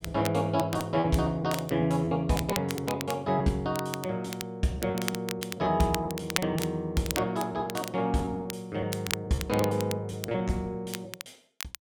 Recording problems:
crackling; vinyl, SNR 9 dB
packet loss; 7% of the sound replaced, filled with repeated pitch periods

